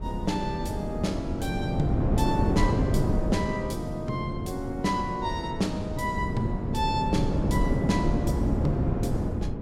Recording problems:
low-frequency rumble; below 100 Hz, SNR 11 dB
wind noise; below 290 Hz, SNR -1 dB

